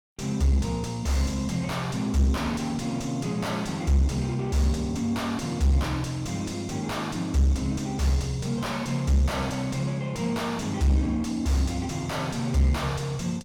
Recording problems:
distortion; soft clipping, signal-to-distortion ratio 6 dB

